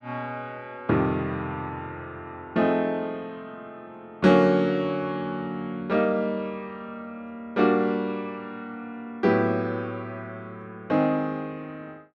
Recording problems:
none

